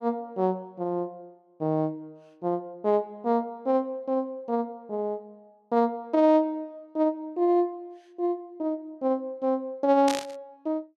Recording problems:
burst of static; at 10 s; peak -1 dB vs average level

